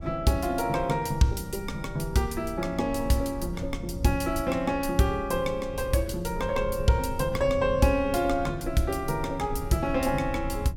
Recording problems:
low-frequency rumble; below 110 Hz, SNR 11 dB

